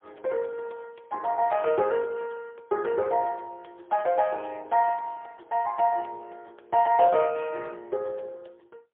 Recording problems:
telephone audio; 320 Hz to 3.1 kHz, AMR-NB, then MP3

